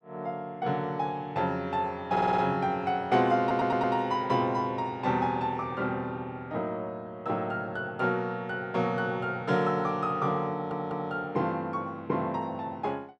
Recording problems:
audio stuttering; at 2 s, at 3.5 s and at 11 s

